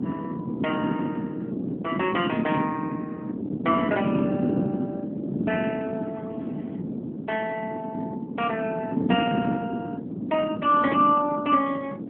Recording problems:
telephone audio; 190 Hz to 3.3 kHz, AMR-NB
wind noise; below 320 Hz, SNR 3 dB

